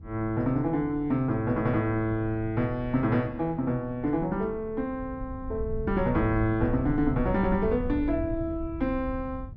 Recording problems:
wind on the microphone; below 100 Hz, SNR 11 dB

